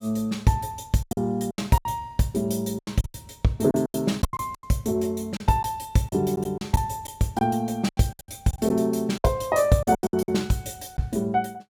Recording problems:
lost packets; 13% of the sound replaced, filled with silence

